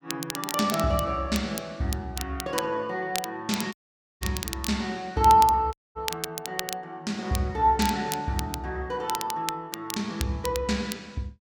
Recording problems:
crackle; vinyl, SNR 9 dB
dropout; at 3.5 s and at 5.5 s

